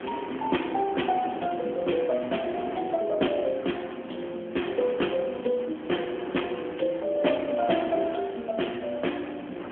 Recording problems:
telephone audio; 190 Hz to 3.3 kHz, AMR-NB
wind noise; below 1.2 kHz, SNR 13 dB

